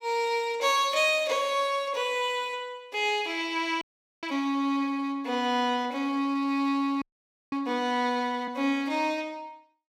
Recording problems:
audio freezing; at 4 s and at 7 s for 0.5 s

